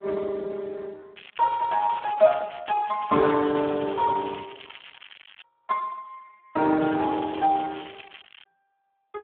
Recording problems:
telephone audio; 260 Hz to 2.1 kHz, Speex
crackle; from 1 to 5.5 s and from 7 to 8.5 s; loose cable, SNR 20 dB

